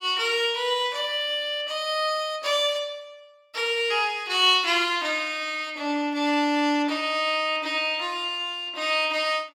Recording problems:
none

